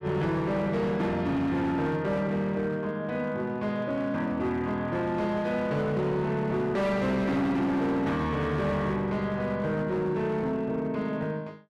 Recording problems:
distorted audio; hard clipping, signal-to-distortion ratio 10 dB

